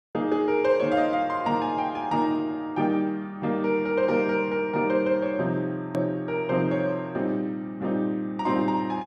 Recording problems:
click at an edit; at 6 s

